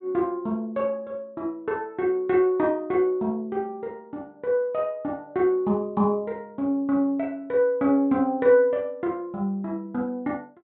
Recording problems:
treble missing; nothing above 4 kHz

